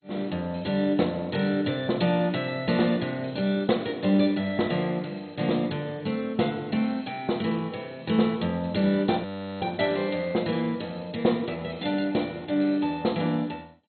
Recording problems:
lossy codec; MP2, log-spectral distance 6 dB, nothing above 4.2 kHz
frozen audio; at 9.5 s

